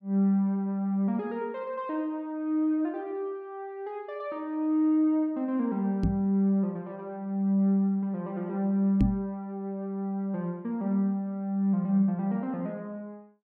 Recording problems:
microphone bump; at 6 s and at 9 s; peak +6 dB vs average level

